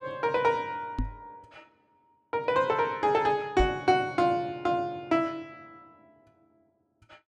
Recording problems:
knock on the microphone; at 1 s and at 3.5 s; peak +1 dB vs average level

